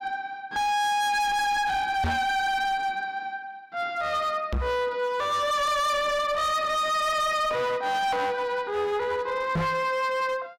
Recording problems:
distorted audio; hard clipping, signal-to-distortion ratio 6 dB
knock on the microphone; at 2 s, at 4.5 s and at 9.5 s; peak +3 dB vs average level

